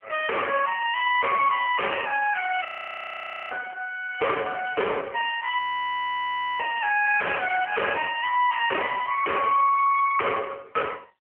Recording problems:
telephone audio; 450 Hz to 2.3 kHz, AMR-NB
distortion; hard clipping, signal-to-distortion ratio 5 dB
frozen audio; at 2.5 s for 1 s and at 5.5 s for 1 s

